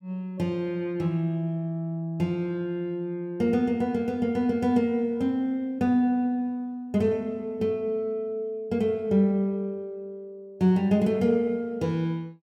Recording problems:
none

